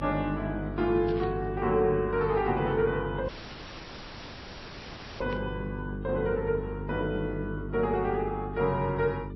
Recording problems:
codec artefacts; MP3, then AAC, log-spectral distance 5 dB
hum; 50 Hz, harmonics up to 450 Hz, SNR 8 dB
static burst; at 1 s and at 5.5 s; peak -13 dB vs average level
audio cutting out; at 3.5 s for 2 s

